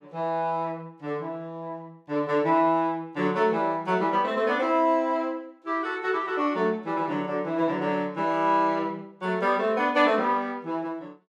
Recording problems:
none

